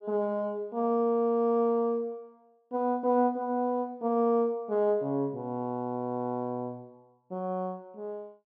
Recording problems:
none

